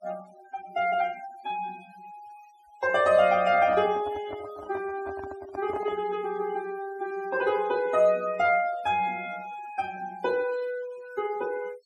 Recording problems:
noise reduction artefacts; signal-to-artefact ratio 20 dB
microphone handling noise; from 3.5 to 6 s; peak -8 dB vs average level

